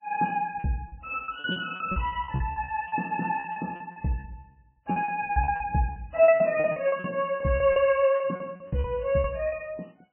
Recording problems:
lossy codec; MP3, log-spectral distance 3 dB, nothing above 2.9 kHz
lost packets; 17% of the sound replaced, filled with repeated pitch periods

